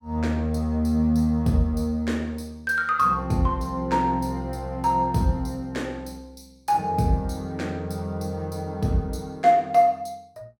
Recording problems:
none

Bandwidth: 17.5 kHz